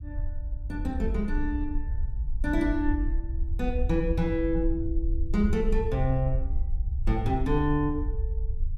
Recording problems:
low-frequency rumble; below 64 Hz, SNR 2 dB

